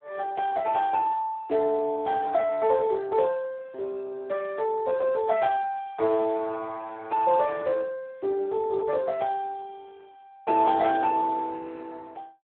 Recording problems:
phone line; 300 Hz to 3.6 kHz, Speex

